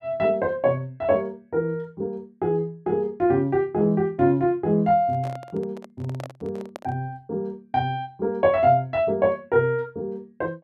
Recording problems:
handling noise; from 5 to 7 s; peak -8 dB vs average level

